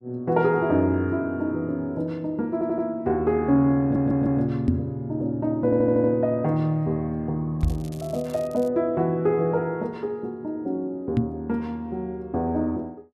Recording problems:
stutter; at 2.5 s, at 4 s and at 5.5 s
knock on the microphone; at 4.5 s, at 7.5 s and at 11 s; peak +6 dB vs average level
crackling; from 7.5 to 8.5 s; loose cable, SNR 24 dB

